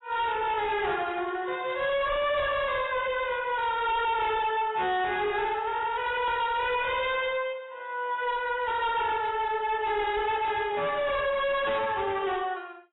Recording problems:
lossy compression; AAC, log-spectral distance 4 dB, nothing above 3.8 kHz
distortion; hard clipping, signal-to-distortion ratio 7 dB

